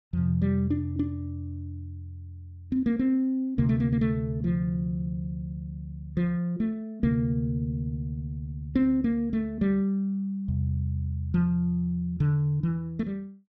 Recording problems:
none

